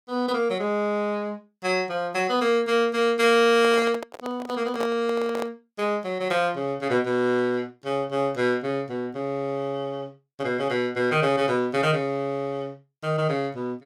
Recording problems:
microphone handling noise; from 3.5 to 5.5 s; peak -3 dB vs average level

